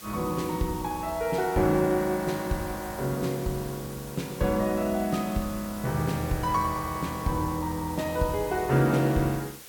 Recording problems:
hiss; slope -1 dB per octave, SNR 15 dB

